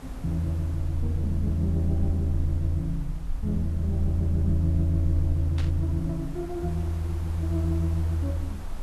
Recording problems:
hiss; slope -5 dB per octave, SNR 20 dB
low-frequency rumble; below 54 Hz, strongest tone 22 Hz, SNR 11 dB
static burst; at 5.5 s; peak -9 dB vs average level

